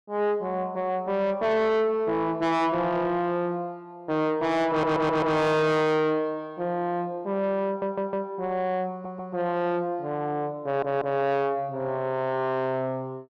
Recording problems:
distorted audio; soft clipping, signal-to-distortion ratio 6 dB
audio stuttering; 4 times, first at 4.5 s

